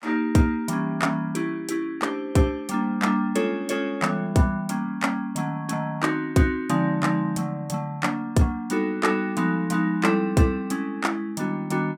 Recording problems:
none

